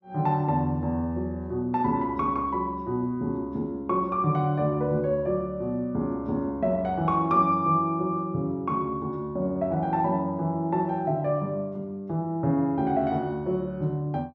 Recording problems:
none

